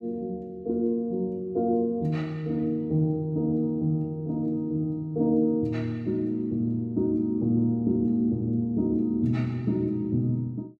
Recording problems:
none

